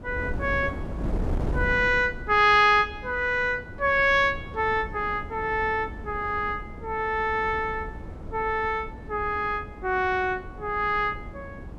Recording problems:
wind on the microphone; below 270 Hz, SNR 12 dB

